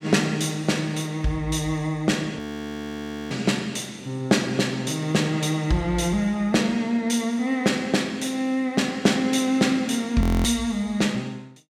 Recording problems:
frozen audio; at 2.5 s for 1 s and at 10 s

